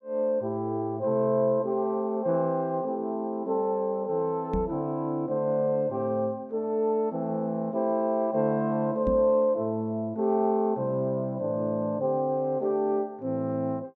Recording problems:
microphone bump; at 4.5 s and at 9 s; peak -1 dB vs average level

